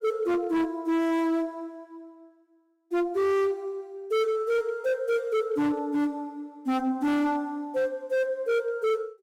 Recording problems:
distortion; hard clipping, signal-to-distortion ratio 8 dB

